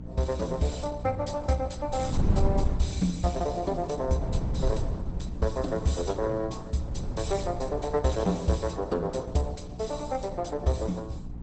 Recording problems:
codec artefacts; Opus, log-spectral distance 4 dB, nothing above 8 kHz
hum; 60 Hz, harmonics up to 300 Hz, SNR 13 dB
wind on the microphone; below 130 Hz, SNR 5 dB

